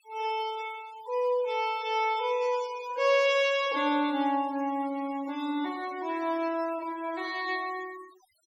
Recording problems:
denoising artefacts; signal-to-artefact ratio 20 dB

